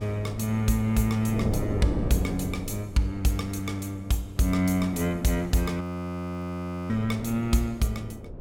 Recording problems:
wind noise; below 360 Hz, SNR 9 dB
frozen audio; at 6 s for 1 s

